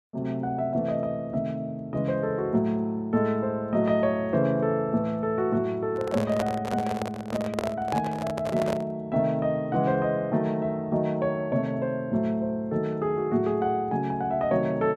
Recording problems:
handling noise; from 6 to 9 s; peak +2 dB vs average level

